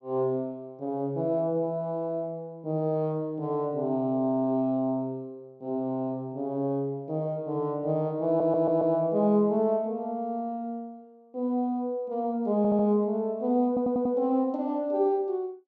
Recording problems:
audio stuttering; at 8.5 s, at 13 s and at 14 s

